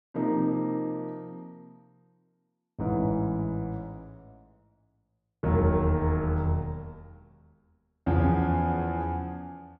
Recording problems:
none

